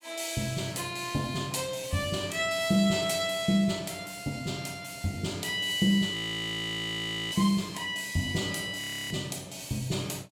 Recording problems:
audio freezing; at 6 s for 1 s and at 9 s

